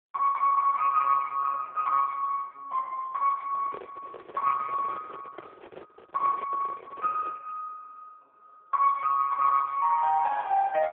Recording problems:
telephone audio; 540 Hz to 2.2 kHz, AMR-NB
microphone handling noise; from 3.5 to 7.5 s; peak -9 dB vs average level

